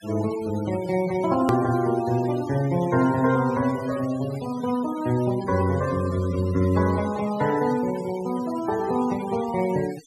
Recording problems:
noise reduction artefacts; signal-to-artefact ratio 17 dB
edit click; at 1.5 s

